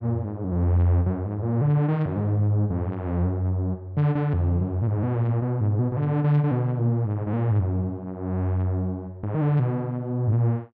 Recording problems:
none

